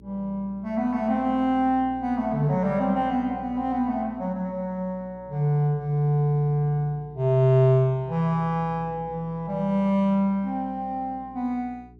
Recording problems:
electrical hum; 60 Hz, harmonics up to 420 Hz, SNR 23 dB

